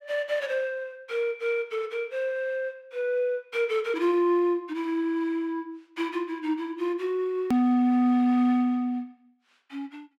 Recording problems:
hard cut with a click; at 7.5 s

